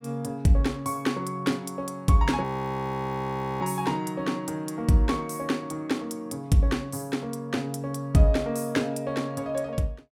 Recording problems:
audio freezing; at 2.5 s for 1 s

